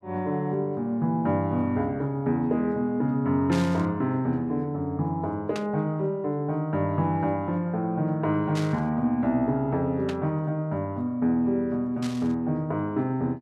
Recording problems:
burst of static; 5 times, first at 3.5 s; peak -6 dB vs average level

